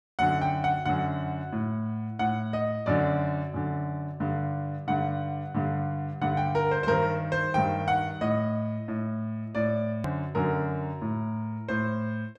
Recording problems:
hard cut with a click; at 10 s

